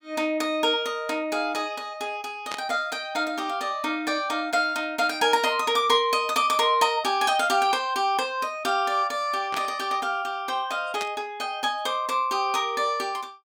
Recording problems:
burst of static; at 2.5 s, at 9.5 s and at 11 s; peak -4 dB vs average level

